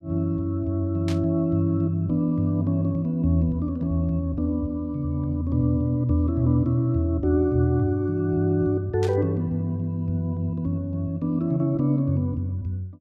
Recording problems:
static burst; at 1 s and at 9 s; peak -9 dB vs average level

